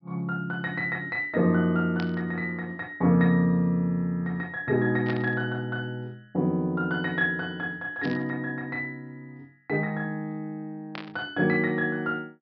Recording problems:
treble cut off; nothing above 5.5 kHz
burst of static; 4 times, first at 2 s; peak -7 dB vs average level

